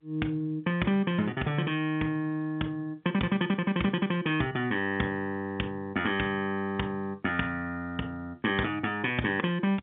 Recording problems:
phone line; 130 Hz to 3.6 kHz, G.711

